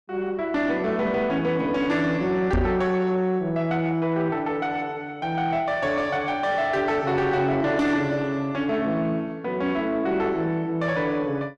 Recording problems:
distorted audio; soft clipping, signal-to-distortion ratio 11 dB
knock on the microphone; at 2.5 s; peak +5 dB vs average level

